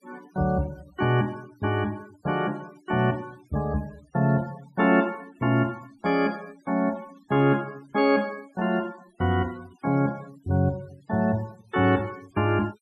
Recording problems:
noise reduction artefacts; signal-to-artefact ratio 26 dB

